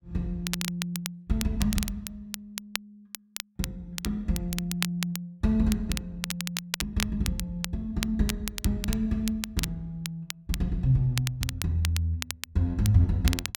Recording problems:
crackling; vinyl, SNR 7 dB

